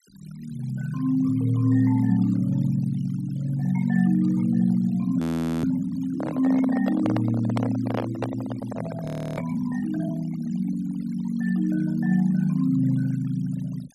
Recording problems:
denoising artefacts; signal-to-artefact ratio 22 dB
audio freezing; at 5 s and at 9 s
handling noise; from 6 to 9.5 s; peak -1 dB vs average level

